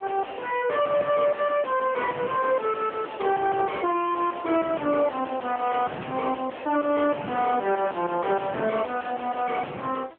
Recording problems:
phone line; 220 Hz to 3.3 kHz, AMR-NB
distortion; soft clipping, signal-to-distortion ratio 1 dB

